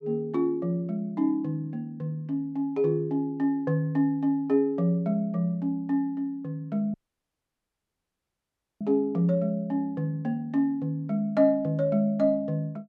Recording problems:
audio cutting out; at 7 s for 2 s

